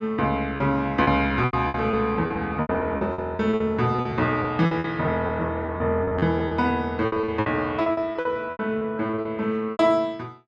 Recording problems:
lost packets; 16% of the sound replaced, filled with repeated pitch periods

